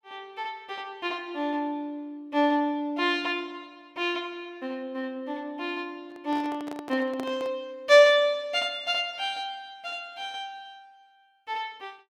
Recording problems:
handling noise; from 6 to 7.5 s; peak -6 dB vs average level

